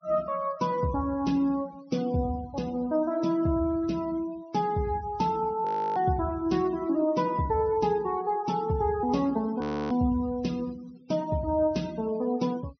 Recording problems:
treble cut off; nothing above 6.2 kHz
denoising artefacts; signal-to-artefact ratio 22 dB
audio freezing; at 5.5 s and at 9.5 s

